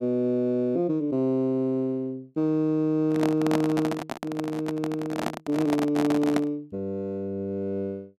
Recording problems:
microphone handling noise; from 3 to 6.5 s; peak +2 dB vs average level

